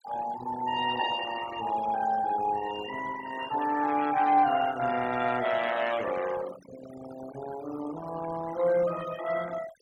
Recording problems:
denoising artefacts; signal-to-artefact ratio 13 dB

